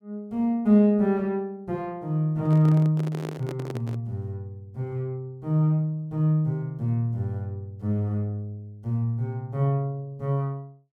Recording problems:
handling noise; from 2.5 to 4 s; peak -6 dB vs average level

